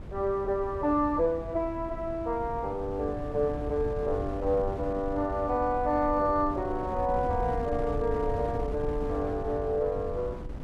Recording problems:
wind noise; below 210 Hz, SNR 9 dB

